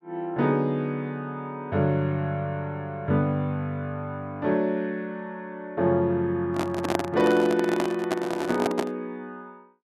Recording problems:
microphone handling noise; from 6.5 to 9 s; peak +4 dB vs average level

